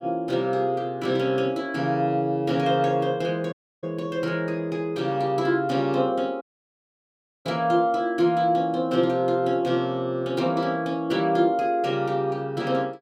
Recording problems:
audio cutting out; at 3.5 s and at 6.5 s for 1 s

